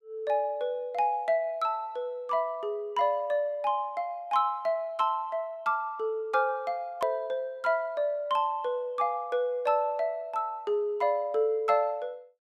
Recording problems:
edit click; at 7 s

